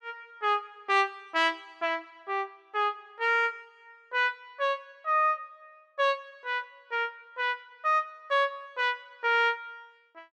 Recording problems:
none

